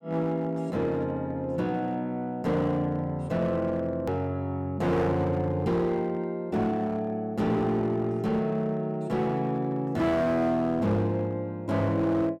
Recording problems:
distorted audio; hard clipping, uneven, signal-to-distortion ratio 11 dB
click at an edit; at 4 s

